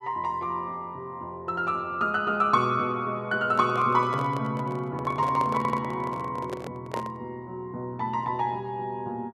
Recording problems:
microphone handling noise; from 3.5 to 7 s; peak -2 dB vs average level
audio stuttering; at 5.5 s

